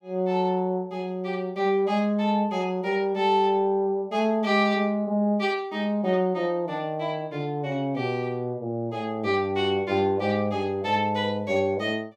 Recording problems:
none

